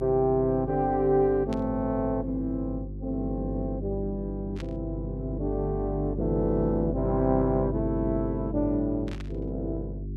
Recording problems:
hum; 50 Hz, harmonics up to 400 Hz, SNR 7 dB
burst of static; at 1.5 s, at 4.5 s and at 9 s; peak -11 dB vs average level

